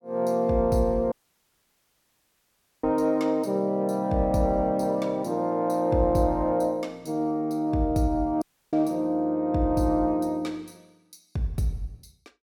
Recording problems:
dropout; at 1 s for 1.5 s and at 8.5 s

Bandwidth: 17.5 kHz